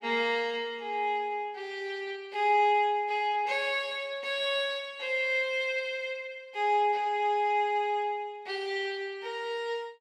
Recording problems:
none

